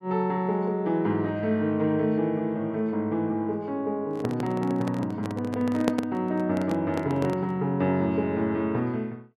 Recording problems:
microphone handling noise; from 4 to 7.5 s; peak +4 dB vs average level

